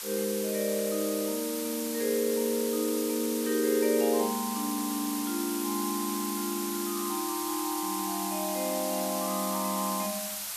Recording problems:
hiss; SNR 4 dB

